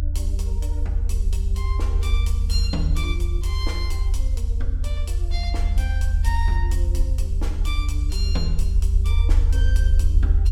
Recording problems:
low-frequency rumble; below 76 Hz, SNR -10 dB

